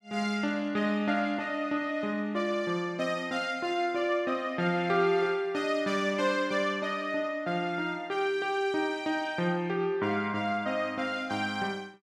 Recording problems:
none

